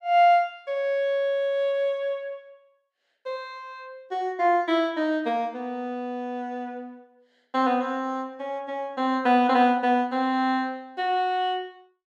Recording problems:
none

